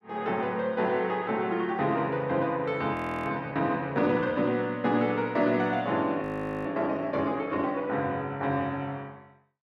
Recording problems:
audio freezing; at 3 s and at 6 s

